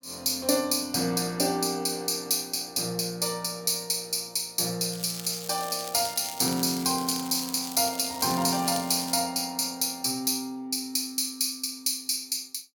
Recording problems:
crackle; from 5 to 9 s; loose cable, SNR 11 dB

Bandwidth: 18 kHz